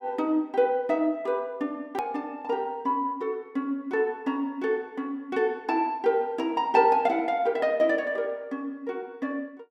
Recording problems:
edit click; at 2 s

